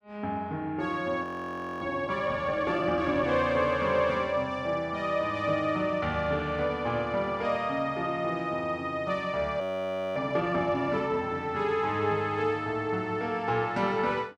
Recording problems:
frozen audio; at 1 s for 0.5 s and at 9.5 s for 0.5 s

